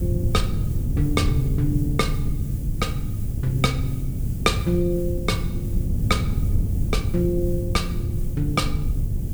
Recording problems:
background hiss; slope +2 dB per octave, SNR 18 dB
rumble; below 120 Hz, SNR 0 dB

